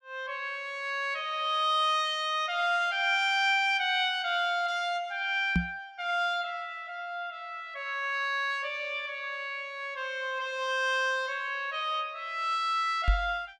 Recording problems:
knock on the microphone; at 5.5 s and at 13 s; peak +6 dB vs average level

